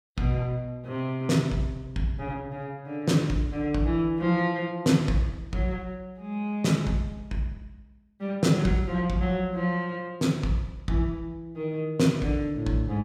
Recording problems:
none

